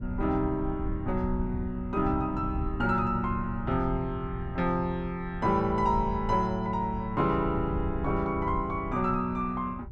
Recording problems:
wind on the microphone; below 96 Hz, SNR 9 dB

